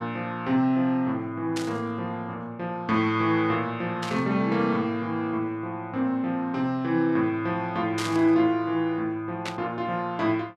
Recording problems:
burst of static; 4 times, first at 1.5 s; peak -2 dB vs average level

